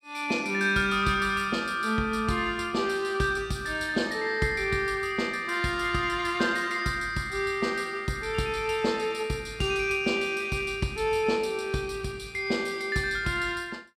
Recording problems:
none

